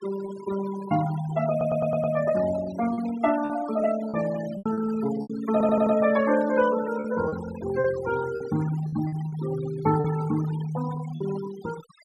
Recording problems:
denoising artefacts; signal-to-artefact ratio 13 dB
packet loss; 6% of the sound replaced, filled with repeated pitch periods
audio stuttering; at 1.5 s and at 5.5 s

